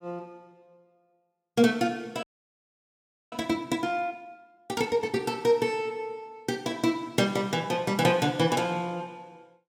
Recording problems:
frozen audio; at 2 s for 1 s

